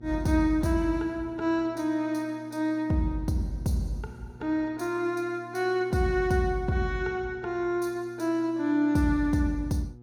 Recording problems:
hum; 60 Hz, harmonics up to 840 Hz, SNR 21 dB

